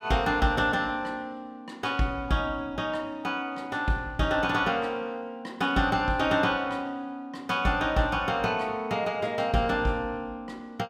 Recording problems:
none

